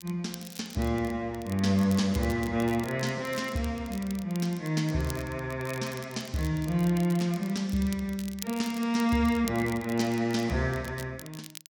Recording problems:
crackle; vinyl, SNR 17 dB

